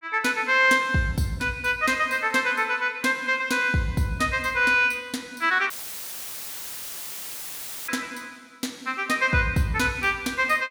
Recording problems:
audio cutting out; at 5.5 s for 2 s; filled with static

